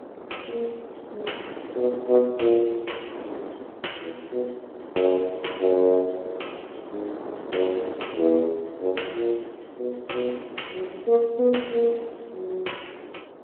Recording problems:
phone line; 280 Hz to 3.1 kHz, Speex
wind on the microphone; below 670 Hz, SNR 13 dB

